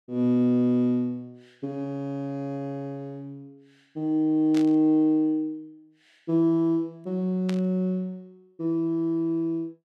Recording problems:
burst of static; at 4.5 s and at 7.5 s; peak -8 dB vs average level

